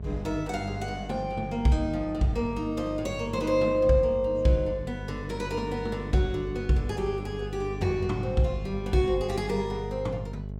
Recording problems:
hum; 50 Hz, harmonics up to 650 Hz, SNR 10 dB

